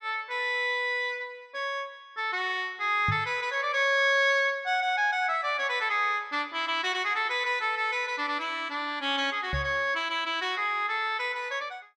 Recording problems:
microphone bump; at 3 s and at 9.5 s; peak 0 dB vs average level

